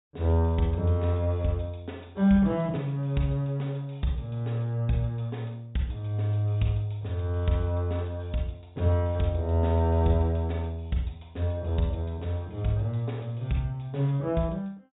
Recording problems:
treble missing; nothing above 4 kHz

